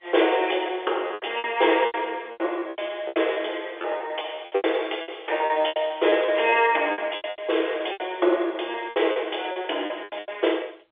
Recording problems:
telephone audio; 300 Hz to 3.6 kHz, G.711
lost packets; 16% of the sound replaced, filled with repeated pitch periods

